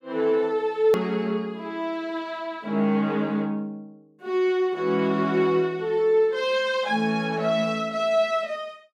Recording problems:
edit click; at 1 s

